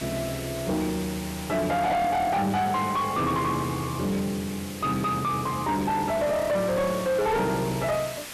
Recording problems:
distortion; soft clipping, signal-to-distortion ratio 7 dB
hiss; slope -3 dB per octave, SNR 11 dB

